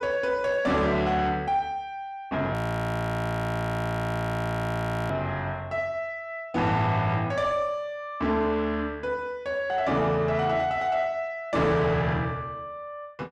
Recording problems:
distorted audio; soft clipping, signal-to-distortion ratio 11 dB
frozen audio; at 2.5 s for 2.5 s

